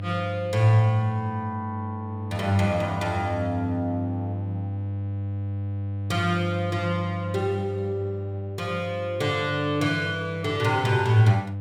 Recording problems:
mains hum; 50 Hz, harmonics up to 500 Hz, SNR 7 dB

